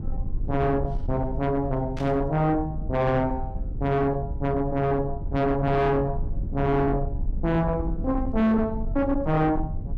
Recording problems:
distorted audio; soft clipping, signal-to-distortion ratio 7 dB
rumble; below 98 Hz, SNR 8 dB
static burst; at 2 s; peak -13 dB vs average level

